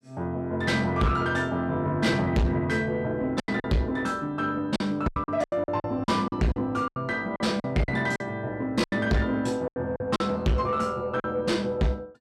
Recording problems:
distorted audio; soft clipping, signal-to-distortion ratio 8 dB
lost packets; 9% of the sound replaced, filled with silence

